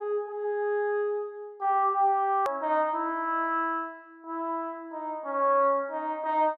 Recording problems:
click at an edit; at 2.5 s

